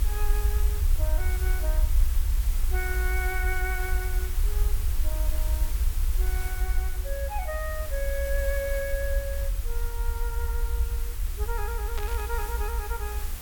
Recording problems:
background hiss; slope -2 dB per octave, SNR 4 dB
rumble; below 58 Hz, SNR -6 dB
burst of static; at 12 s; peak 0 dB vs average level

